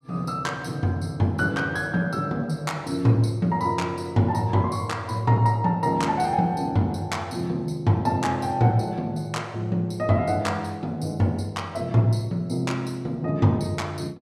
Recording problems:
none

